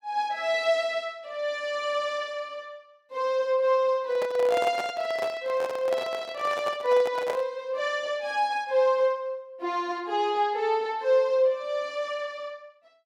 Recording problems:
microphone handling noise; from 4 to 7.5 s; peak -1 dB vs average level

